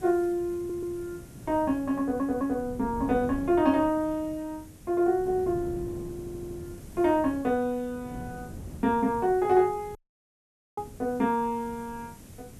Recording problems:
background hiss; slope 0 dB per octave, SNR 27 dB
wind noise; below 270 Hz, SNR 16 dB
audio stuttering; at 0.5 s, at 2 s and at 6 s
dropout; at 10 s for 1 s

